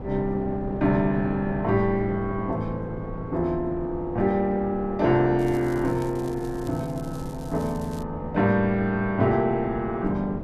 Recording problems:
wind noise; below 420 Hz, SNR 12 dB
crackling; from 5.5 to 8 s; loose cable, SNR 24 dB

